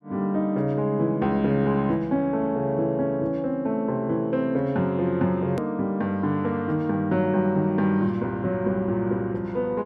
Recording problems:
hard cut with a click; at 5.5 s

